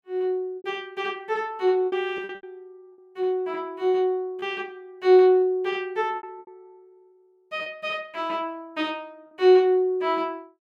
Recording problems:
lost packets; 6% of the sound replaced, filled with repeated pitch periods

